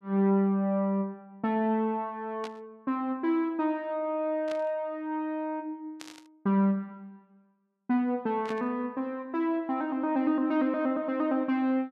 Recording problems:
burst of static; 4 times, first at 2.5 s; peak -9 dB vs average level

